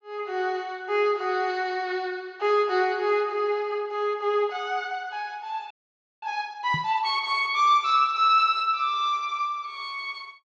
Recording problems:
treble cut off; nothing above 8 kHz
audio freezing; at 5.5 s for 0.5 s
microphone thump; at 6.5 s; peak -4 dB vs average level

